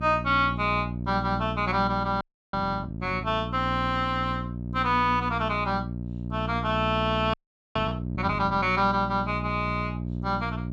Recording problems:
electrical hum; 60 Hz, harmonics up to 660 Hz, SNR 6 dB
audio freezing; at 2 s and at 7.5 s

